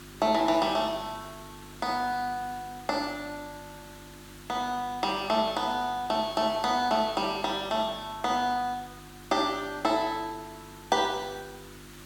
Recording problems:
electrical hum; 50 Hz, harmonics up to 350 Hz, SNR 21 dB
hiss; SNR 20 dB

